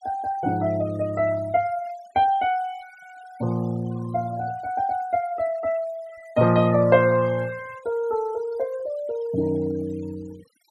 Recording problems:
denoising artefacts; signal-to-artefact ratio 22 dB

